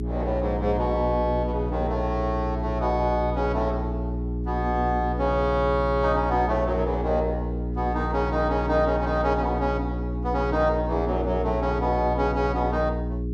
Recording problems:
electrical hum; 60 Hz, harmonics up to 420 Hz, SNR 4 dB

